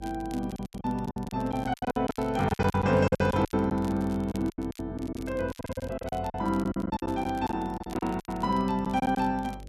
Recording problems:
electrical hum; 50 Hz, harmonics up to 600 Hz, SNR 17 dB
crackling; vinyl, SNR 23 dB
lost packets; 19% of the sound replaced, filled with silence

